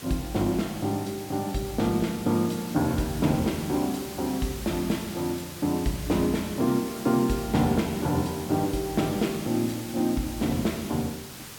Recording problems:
background hiss; slope -1 dB per octave, SNR 12 dB

